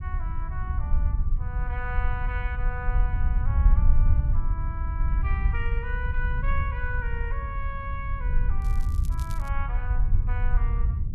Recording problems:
low-frequency rumble; below 66 Hz, SNR -9 dB
crackling; at 8.5 s; loose cable, SNR 14 dB

